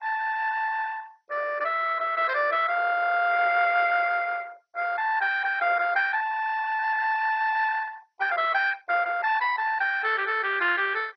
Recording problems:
lossy codec; MP2, then MP2, log-spectral distance 5 dB, nothing above 4.9 kHz

